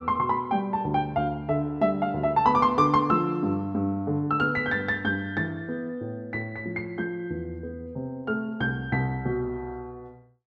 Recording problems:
none

